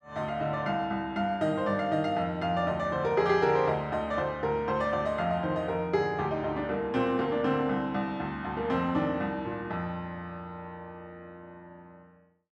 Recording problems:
none

